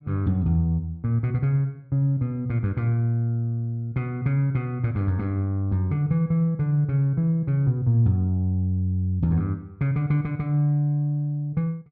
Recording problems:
none

